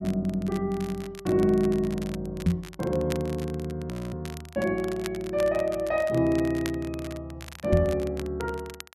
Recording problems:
crackling; vinyl, SNR 17 dB
knock on the microphone; at 2.5 s and at 7.5 s; peak +8 dB vs average level
audio freezing; at 4 s

